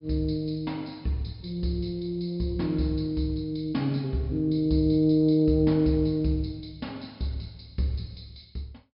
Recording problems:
low-pass filter; nothing above 5.5 kHz

